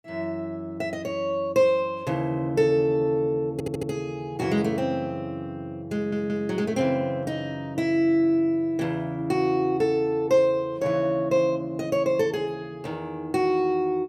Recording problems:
audio stuttering; at 3.5 s and at 6 s

